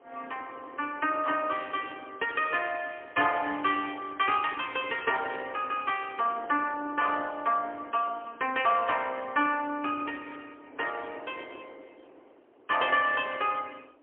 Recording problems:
phone line; 260 Hz to 3.2 kHz, AMR-NB, then MP3
wind on the microphone; below 800 Hz, SNR 22 dB

